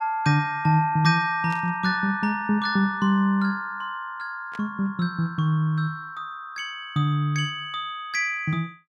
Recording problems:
burst of static; at 1.5 s and at 4.5 s; peak -13 dB vs average level

